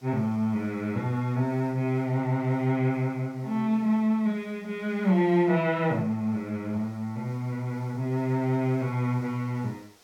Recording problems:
background hiss; slope -2 dB per octave, SNR 30 dB

